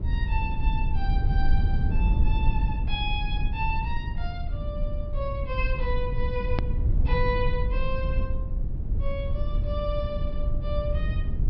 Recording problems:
treble cut off; nothing above 5.5 kHz
low-frequency rumble; below 72 Hz, SNR -5 dB
hard cut with a click; at 6.5 s

